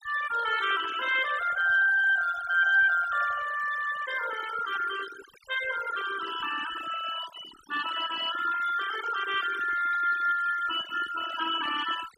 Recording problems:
denoising artefacts; signal-to-artefact ratio 11 dB

